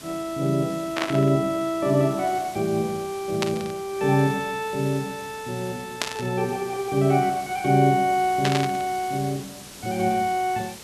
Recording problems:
hiss; slope -1 dB per octave, SNR 17 dB
burst of static; 4 times, first at 1 s; peak +3 dB vs average level

